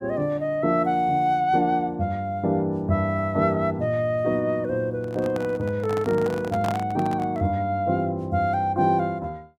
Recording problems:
microphone handling noise; from 5 to 7.5 s; peak -3 dB vs average level

